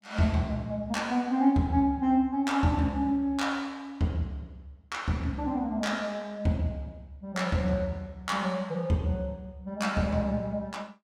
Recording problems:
none

